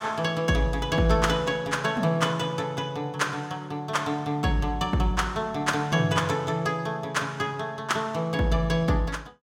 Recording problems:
none

